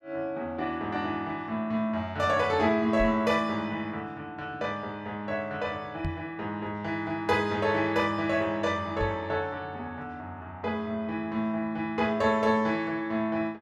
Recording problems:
microphone bump; at 3 s, at 6 s and at 9 s; peak 0 dB vs average level

